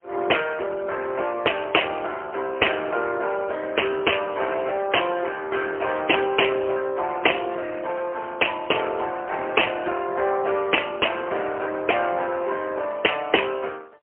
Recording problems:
phone line; 340 Hz to 3.1 kHz, AMR-NB, then MP3

